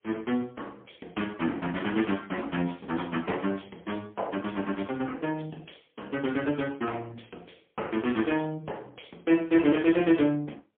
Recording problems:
telephone audio; 220 Hz to 3.3 kHz, AMR-NB, then MP3

